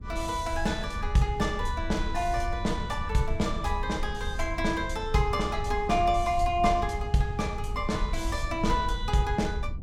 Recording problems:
low-frequency rumble; below 74 Hz, SNR 7 dB

